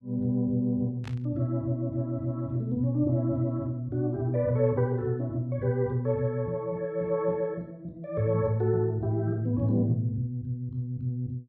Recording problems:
static burst; at 1 s; peak -11 dB vs average level

